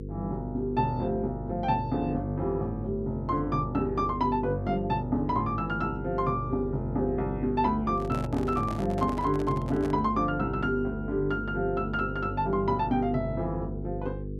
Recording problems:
electrical hum; 50 Hz, harmonics up to 500 Hz, SNR 8 dB
microphone handling noise; from 8 to 10 s; peak -6 dB vs average level

